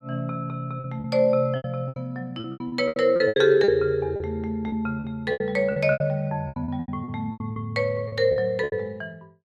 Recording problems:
packet loss; 16% of the sound replaced, filled with repeated pitch periods

